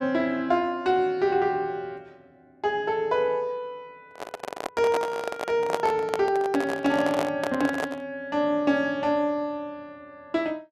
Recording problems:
microphone handling noise; from 4 to 8 s; peak +3 dB vs average level

